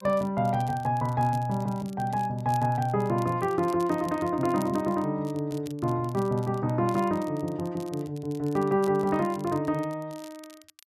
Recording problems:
crackling; vinyl, SNR 23 dB

